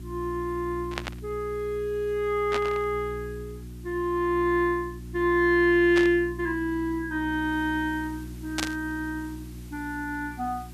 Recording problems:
electrical hum; 60 Hz, harmonics up to 360 Hz, SNR 14 dB
hiss; slope -1 dB per octave, SNR 27 dB
static burst; 4 times, first at 1 s; peak +2 dB vs average level

